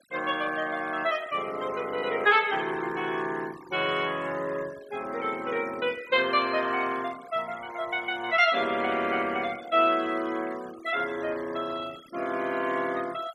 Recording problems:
noise reduction artefacts; signal-to-artefact ratio 19 dB

